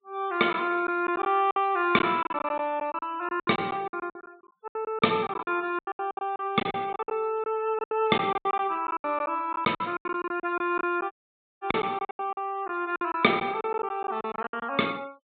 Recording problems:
treble cut off; nothing above 4 kHz
denoising artefacts; signal-to-artefact ratio 27 dB
lost packets; 17% of the sound replaced, filled with silence
dropout; at 11 s for 0.5 s

